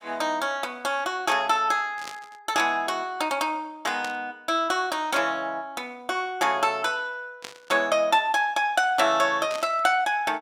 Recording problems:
static burst; 4 times, first at 2 s; peak -7 dB vs average level

